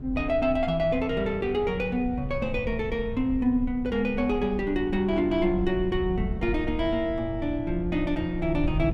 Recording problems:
wind noise; below 100 Hz, SNR 10 dB

